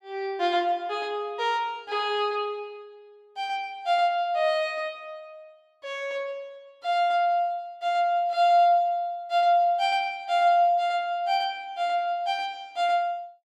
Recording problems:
none

